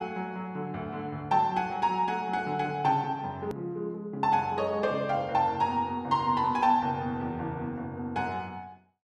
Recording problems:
click at an edit; at 3.5 s

